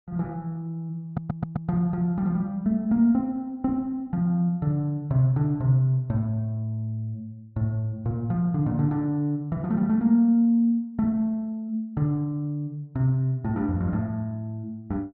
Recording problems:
audio stuttering; at 1 s

